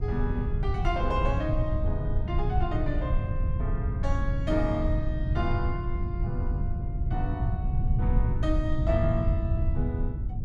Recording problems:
rumble; below 110 Hz, SNR -4 dB

